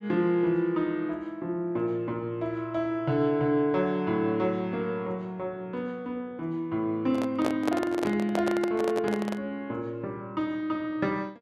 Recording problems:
handling noise; from 7 to 9.5 s; peak +2 dB vs average level

